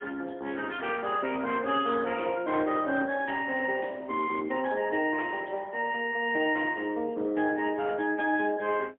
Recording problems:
telephone audio; 240 Hz to 3.3 kHz, AMR-NB, then MP3

